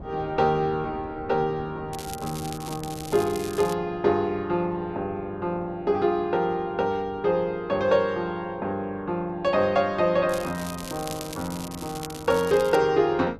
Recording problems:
wind noise; below 420 Hz, SNR 19 dB
crackling; from 2 to 3.5 s and from 10 to 13 s; loose cable, SNR 14 dB

